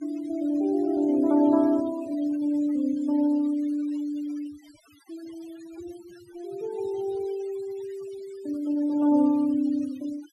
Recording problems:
noise reduction artefacts; signal-to-artefact ratio 25 dB

